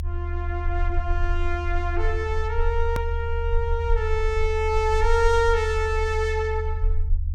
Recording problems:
low-frequency rumble; below 78 Hz, SNR 2 dB
hard cut with a click; at 3 s

